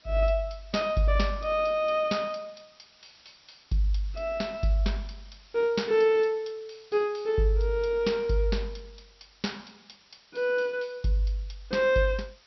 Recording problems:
treble missing; nothing above 5.7 kHz
hiss; slope +1 dB per octave, SNR 28 dB

